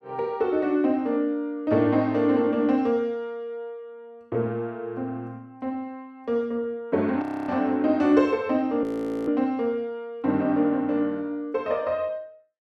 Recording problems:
frozen audio; at 7 s and at 9 s

